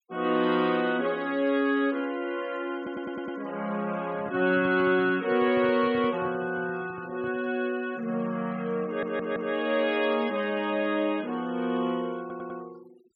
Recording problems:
noise reduction artefacts; signal-to-artefact ratio 23 dB
stutter; at 3 s, at 9 s and at 12 s
microphone handling noise; from 4 to 7.5 s; peak -10 dB vs average level

